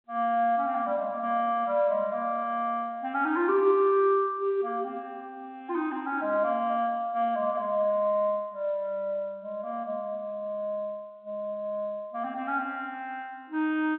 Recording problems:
telephone audio; 320 Hz to 3.4 kHz, G.711

